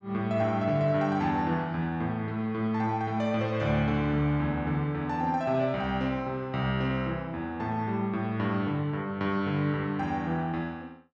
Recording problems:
none

